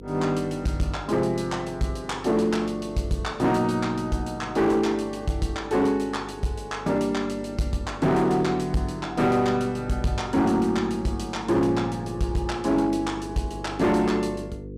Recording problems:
distortion; hard clipping, signal-to-distortion ratio 11 dB
hum; 50 Hz, harmonics up to 500 Hz, SNR 15 dB

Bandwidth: 15.5 kHz